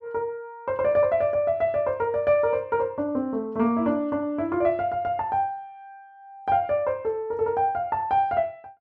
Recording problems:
none

